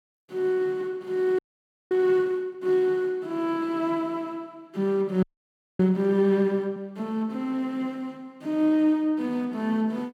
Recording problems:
audio freezing; at 1.5 s for 0.5 s and at 5 s for 0.5 s

